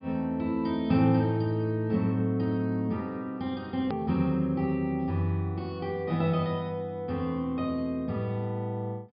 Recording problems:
low-pass filter; nothing above 5.5 kHz
hard cut with a click; at 4 s

